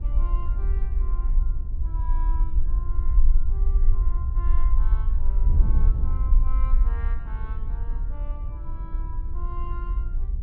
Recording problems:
rumble; below 48 Hz, strongest tone 22 Hz, SNR -17 dB
wind on the microphone; below 74 Hz, SNR -10 dB

